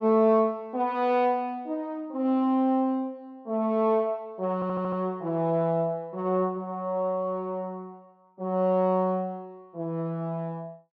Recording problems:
stutter; at 4.5 s

